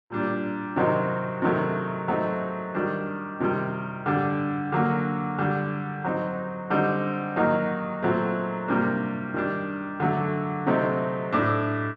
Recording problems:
none

